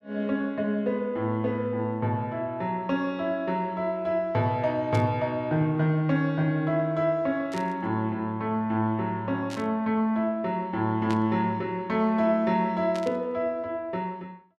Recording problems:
static burst; 5 times, first at 5 s; peak -8 dB vs average level

